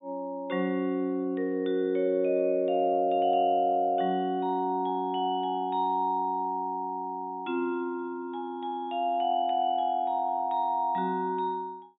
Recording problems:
low-pass filter; nothing above 4 kHz

